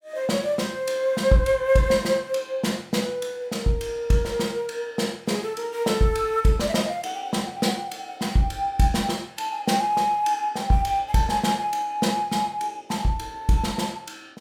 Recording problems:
none

